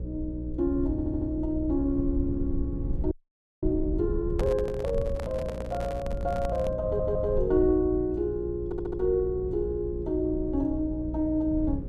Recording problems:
electrical hum; 60 Hz, harmonics up to 540 Hz, SNR 10 dB
rumble; below 96 Hz, SNR 8 dB
audio stuttering; at 1 s, at 7 s and at 8.5 s
frozen audio; at 3 s for 0.5 s
handling noise; from 4 to 7 s; peak -3 dB vs average level

